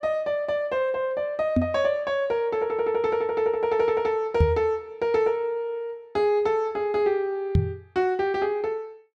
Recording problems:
microphone bump; at 1.5 s, at 4.5 s and at 7.5 s; peak +7 dB vs average level

